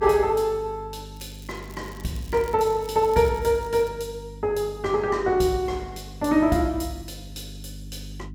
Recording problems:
hum; 50 Hz, harmonics up to 300 Hz, SNR 18 dB
crackle; from 1 to 4 s; loose cable, SNR 25 dB

